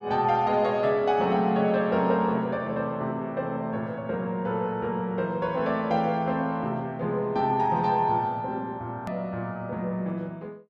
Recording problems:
edit click; at 9 s

